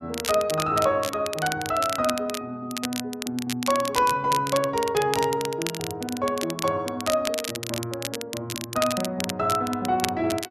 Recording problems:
crackling; vinyl, SNR 7 dB

